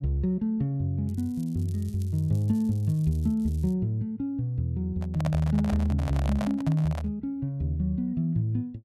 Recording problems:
crackling; from 1 to 3.5 s; loose cable, SNR 27 dB
microphone handling noise; from 5 to 7 s; peak -2 dB vs average level

